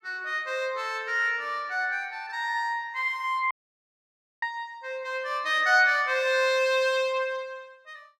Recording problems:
audio cutting out; at 3.5 s for 1 s

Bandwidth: 14.5 kHz